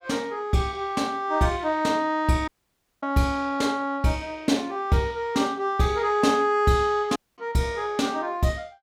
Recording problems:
audio cutting out; at 2.5 s for 0.5 s and at 7 s

